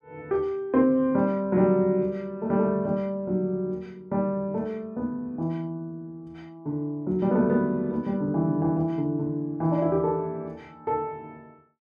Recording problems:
none

